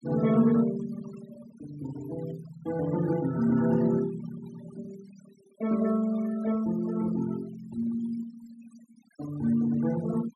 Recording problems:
denoising artefacts; signal-to-artefact ratio 18 dB

